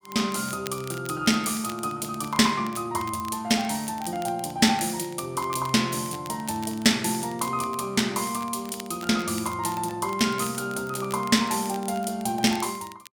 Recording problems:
crackle; vinyl, SNR 19 dB

